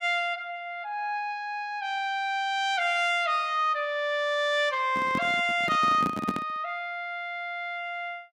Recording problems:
handling noise; from 5 to 6.5 s; peak +2 dB vs average level

